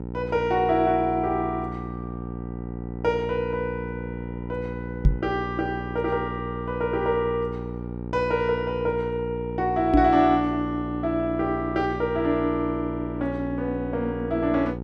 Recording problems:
hum; 60 Hz, harmonics up to 960 Hz, SNR 8 dB
microphone thump; at 5 s and at 10 s; peak +10 dB vs average level

